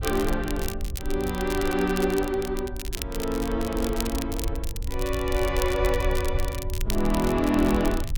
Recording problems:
rumble; below 70 Hz, SNR 7 dB
crackling; vinyl, SNR 11 dB

